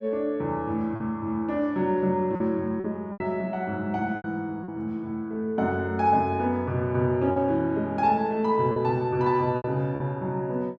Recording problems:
packet loss; 5% of the sound replaced, filled with repeated pitch periods

